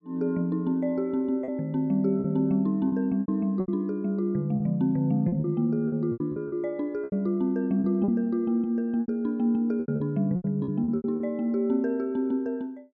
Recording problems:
packet loss; 10% of the sound replaced, filled with repeated pitch periods

